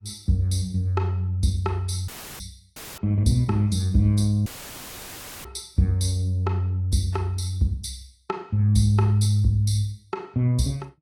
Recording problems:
lossy compression; AAC, log-spectral distance 2 dB
audio cutting out; at 2 s, at 3 s and at 4.5 s for 1 s; filled with static

